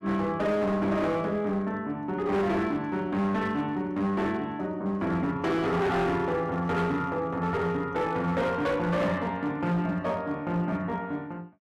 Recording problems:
distorted audio; hard clipping, uneven, signal-to-distortion ratio 10 dB

